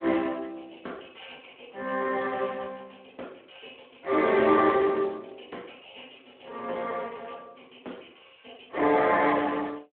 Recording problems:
phone line; 260 Hz to 3.6 kHz, Speex

